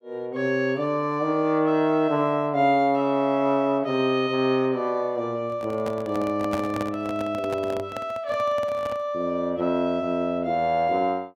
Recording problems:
handling noise; from 5.5 to 9 s; peak -3 dB vs average level

